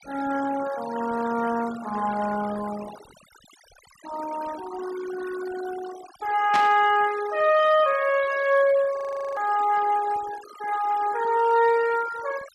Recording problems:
noise reduction artefacts; signal-to-artefact ratio 16 dB
burst of static; at 6.5 s; peak -1 dB vs average level
frozen audio; at 9 s

